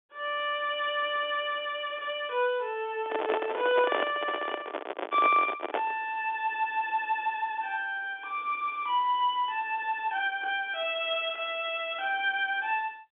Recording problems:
phone line; 280 Hz to 3.9 kHz, G.711
handling noise; from 3 to 6 s; peak +4 dB vs average level

